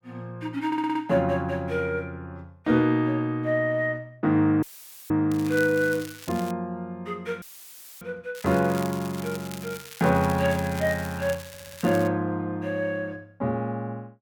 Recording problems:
audio stuttering; at 0.5 s and at 11 s
dropout; at 4.5 s and at 7.5 s for 0.5 s; filled with static
crackle; from 5.5 to 6.5 s and from 8.5 to 12 s; loose cable, SNR 15 dB

